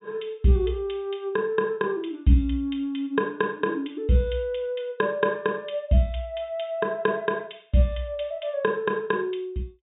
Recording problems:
treble cut off; nothing above 4 kHz

